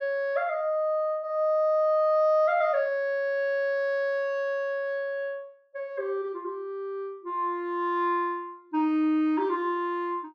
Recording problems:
none

